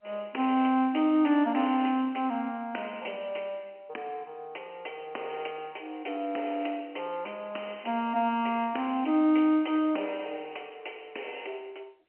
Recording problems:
phone line; 220 Hz to 3.1 kHz, G.711

